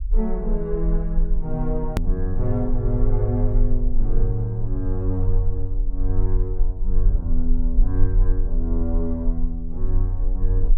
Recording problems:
low-frequency rumble; below 36 Hz, strongest tone 20 Hz, SNR -1 dB
hard cut with a click; at 2 s

